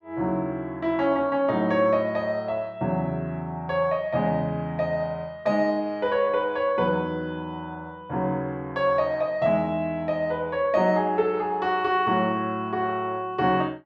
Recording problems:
none

